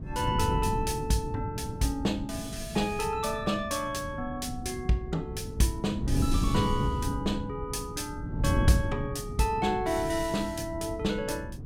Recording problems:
wind noise; below 190 Hz, SNR 4 dB

